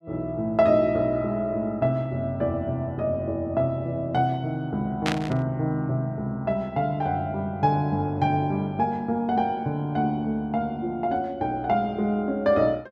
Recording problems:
burst of static; at 5 s; peak +2 dB vs average level

